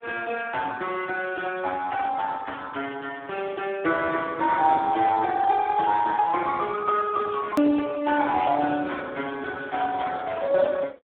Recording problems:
telephone audio; 240 Hz to 2.2 kHz, Speex
click at an edit; at 7.5 s

